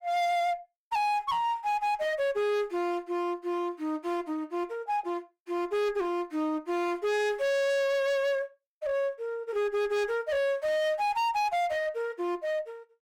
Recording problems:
distortion; hard clipping, uneven, signal-to-distortion ratio 7 dB

